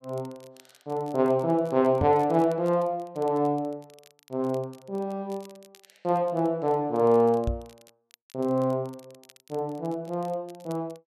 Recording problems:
crackle; vinyl, SNR 29 dB
microphone thump; at 2 s and at 7.5 s; peak +1 dB vs average level

